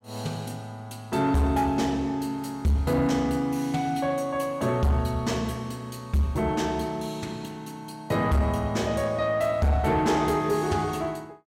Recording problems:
distorted audio; soft clipping, signal-to-distortion ratio 12 dB

